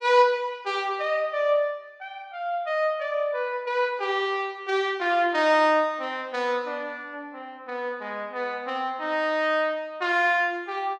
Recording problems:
none

